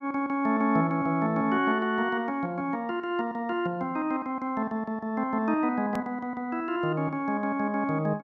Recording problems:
click at an edit; at 6 s

